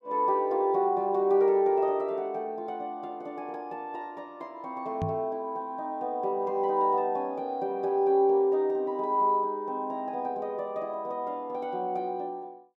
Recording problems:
knock on the microphone; at 5 s; peak 0 dB vs average level

